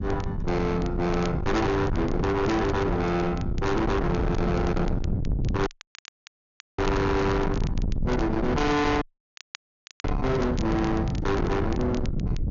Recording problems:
low-pass filter; nothing above 6.9 kHz
distortion; soft clipping, signal-to-distortion ratio 6 dB
low-frequency rumble; below 340 Hz, SNR 3 dB
crackling; vinyl, SNR 23 dB
dropout; at 5.5 s for 1 s and at 9 s for 1 s

